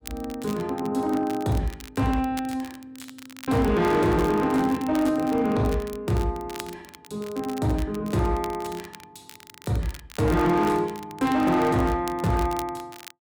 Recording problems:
distorted audio; hard clipping, uneven, signal-to-distortion ratio 12 dB
crackle; vinyl, SNR 19 dB

